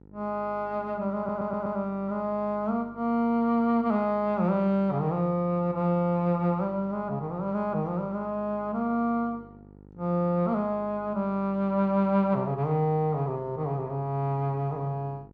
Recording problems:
electrical hum; 50 Hz, harmonics up to 1 kHz, SNR 23 dB
stutter; at 1 s

